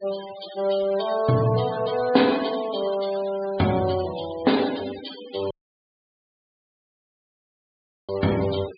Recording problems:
treble missing; nothing above 4.8 kHz
denoising artefacts; signal-to-artefact ratio 15 dB
audio cutting out; at 5.5 s for 2.5 s

